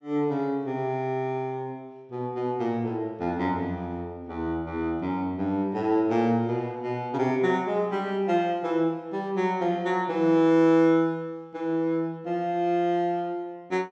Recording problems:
none

